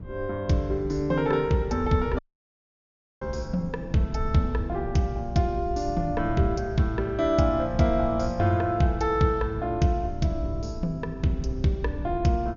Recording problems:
treble cut off; nothing above 7 kHz
rumble; below 110 Hz, SNR 13 dB
audio cutting out; at 2 s for 1 s

